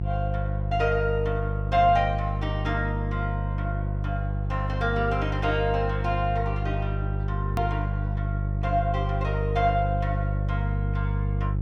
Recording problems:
hum; 50 Hz, harmonics up to 500 Hz, SNR 0 dB
hard cut with a click; at 7.5 s

